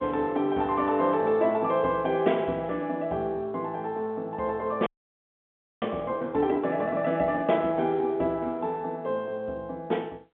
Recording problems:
phone line; 170 Hz to 3.6 kHz, G.711
frozen audio; at 5 s for 1 s

